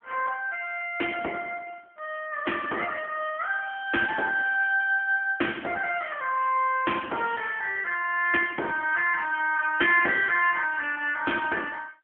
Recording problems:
phone line; 260 Hz to 3.3 kHz, AMR-NB

